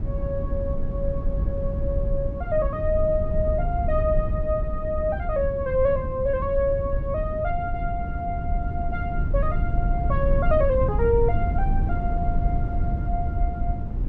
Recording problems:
low-frequency rumble; below 90 Hz, SNR 1 dB

